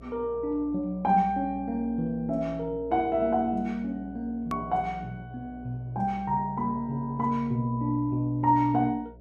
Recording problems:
electrical hum; 60 Hz, harmonics up to 720 Hz, SNR 20 dB
edit click; at 4.5 s

